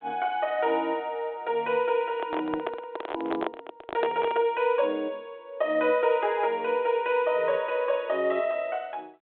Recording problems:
telephone audio; 320 Hz to 3.5 kHz, G.726
handling noise; from 2 to 4.5 s; peak +2 dB vs average level

